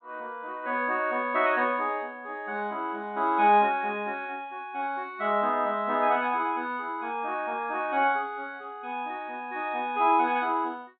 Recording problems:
treble cut off; nothing above 4 kHz

